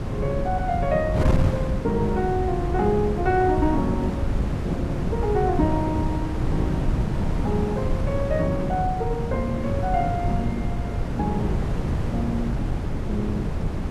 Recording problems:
wind on the microphone; below 220 Hz, SNR 0 dB

